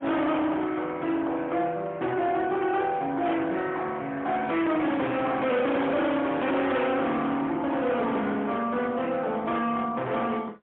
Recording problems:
telephone audio; 190 Hz to 3.6 kHz, AMR-NB, then MP3
distortion; hard clipping, signal-to-distortion ratio 8 dB

